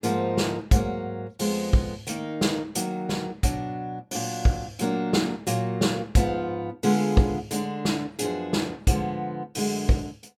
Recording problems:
none

